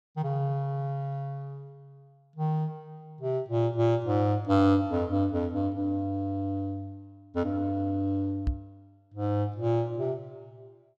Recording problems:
microphone bump; at 8.5 s; peak +4 dB vs average level

